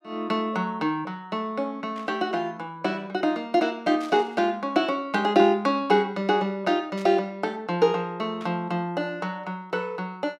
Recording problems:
static burst; 4 times, first at 2 s; peak -13 dB vs average level

